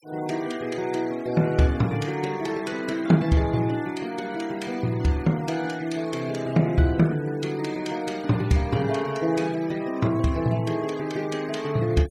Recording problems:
noise reduction artefacts; signal-to-artefact ratio 21 dB

